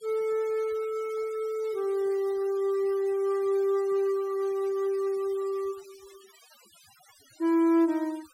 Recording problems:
denoising artefacts; signal-to-artefact ratio 25 dB

